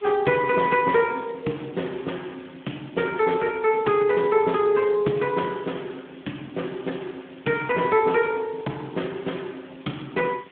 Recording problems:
telephone audio; 170 Hz to 3.5 kHz, Speex
hiss; SNR 27 dB

